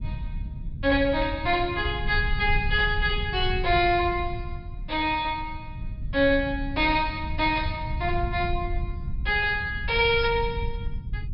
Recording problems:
low-pass filter; nothing above 5.5 kHz
rumble; below 92 Hz, SNR 8 dB

